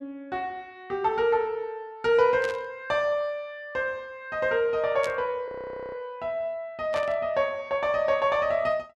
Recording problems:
burst of static; at 2.5 s, at 5 s and at 7 s; peak -6 dB vs average level
frozen audio; at 5.5 s

